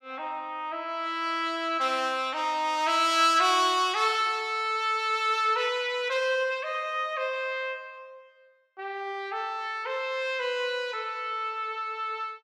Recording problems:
none

